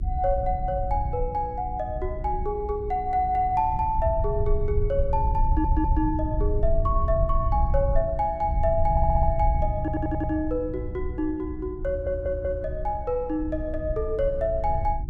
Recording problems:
hum; 60 Hz, harmonics up to 360 Hz, SNR 14 dB
rumble; below 76 Hz, SNR 3 dB
audio stuttering; 4 times, first at 5.5 s

